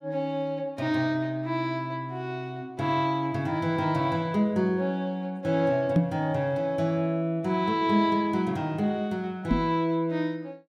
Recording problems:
microphone bump; at 6 s and at 9.5 s; peak +8 dB vs average level

